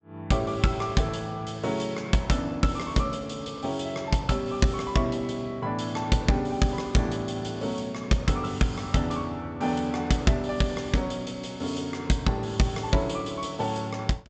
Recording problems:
treble cut off; nothing above 8 kHz

